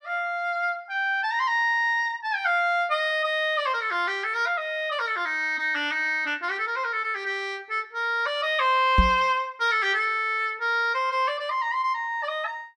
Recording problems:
microphone bump; at 9 s; peak +7 dB vs average level

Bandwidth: 12.5 kHz